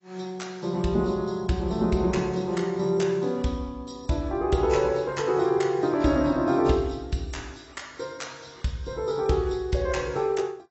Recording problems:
codec artefacts; AAC, log-spectral distance 4 dB, nothing above 7.8 kHz

